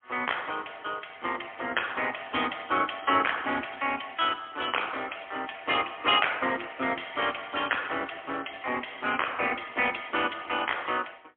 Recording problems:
phone line; 220 Hz to 3.3 kHz, AMR-NB, then MP3

